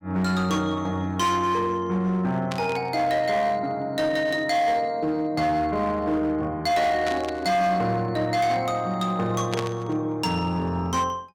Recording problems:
distorted audio; hard clipping, signal-to-distortion ratio 11 dB
static burst; at 2.5 s, at 7 s and at 9.5 s; peak -3 dB vs average level

